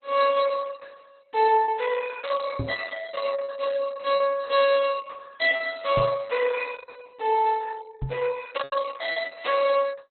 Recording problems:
codec artefacts; Opus, log-spectral distance 4 dB, nothing above 4.1 kHz
lost packets; 3% of the sound replaced, filled with repeated pitch periods
knock on the microphone; at 2.5 s, at 6 s and at 8 s; peak 0 dB vs average level

